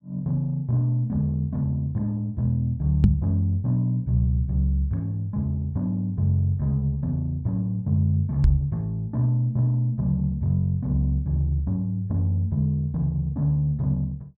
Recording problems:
microphone thump; at 3 s and at 8.5 s; peak +9 dB vs average level

